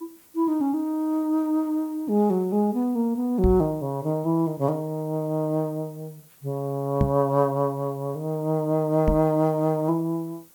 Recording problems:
background hiss; SNR 27 dB
microphone thump; at 3.5 s, at 7 s and at 9 s; peak +5 dB vs average level

